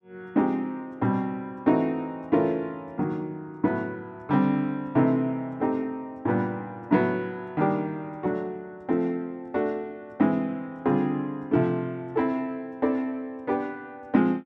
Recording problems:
none

